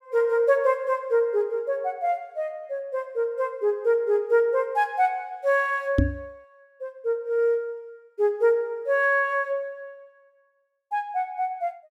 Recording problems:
microphone thump; at 6 s; peak +7 dB vs average level

